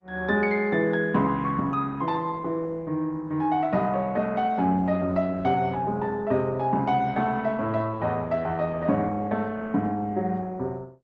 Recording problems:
lossy codec; Opus, log-spectral distance 2 dB

